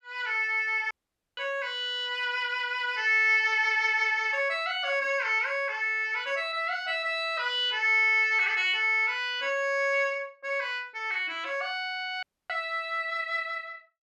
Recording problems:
dropout; at 1 s and at 12 s

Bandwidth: 13.5 kHz